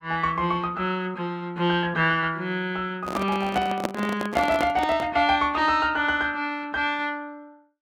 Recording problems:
handling noise; from 3 to 5 s; peak +2 dB vs average level

